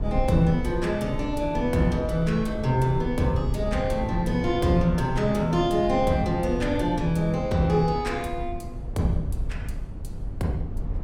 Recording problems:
rumble; below 94 Hz, SNR 9 dB

